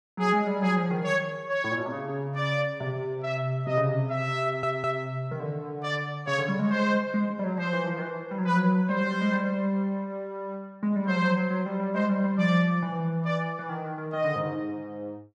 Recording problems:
audio stuttering; at 4.5 s

